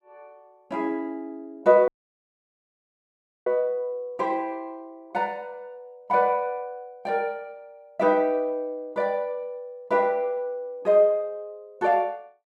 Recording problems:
audio cutting out; at 2 s for 1.5 s

